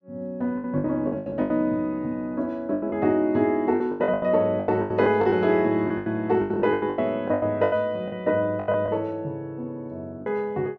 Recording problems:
packet loss; 16% of the sound replaced, filled with the last packet

